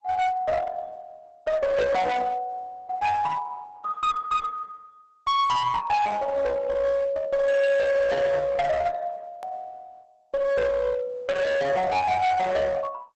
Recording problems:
lossy codec; Opus, log-spectral distance 3 dB, nothing above 7.6 kHz
distorted audio; hard clipping, uneven, signal-to-distortion ratio 6 dB
hard cut with a click; at 9.5 s

